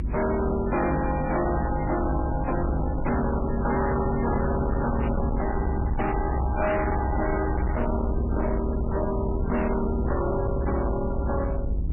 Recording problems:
codec artefacts; MP3, log-spectral distance 3 dB, nothing above 2.5 kHz
distorted audio; hard clipping, uneven, signal-to-distortion ratio 7 dB
hum; 50 Hz, harmonics up to 350 Hz, SNR 6 dB
rumble; below 120 Hz, SNR 3 dB
static burst; 4 times, first at 3 s; peak -11 dB vs average level

